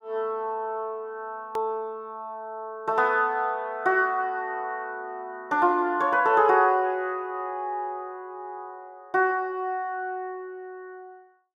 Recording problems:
hard cut with a click; at 1.5 s

